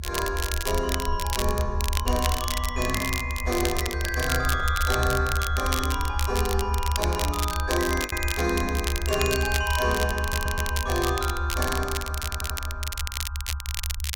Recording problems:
rumble; below 76 Hz, strongest tone 70 Hz, SNR 3 dB
crackle; vinyl, SNR 4 dB
packet loss; 0.8% of the sound replaced, filled with the last packet
handling noise; from 3.5 to 5 s; peak -8 dB vs average level
stutter; at 10 s and at 12 s

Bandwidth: 16.5 kHz